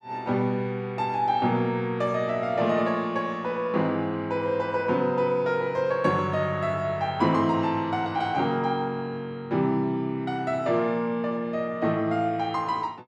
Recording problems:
none

